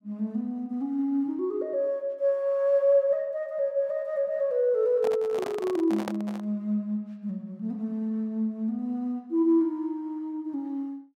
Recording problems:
handling noise; from 5 to 6.5 s; peak -2 dB vs average level

